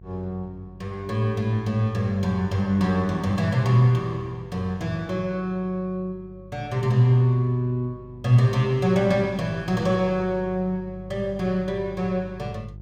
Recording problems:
hum; 50 Hz, harmonics up to 550 Hz, SNR 20 dB

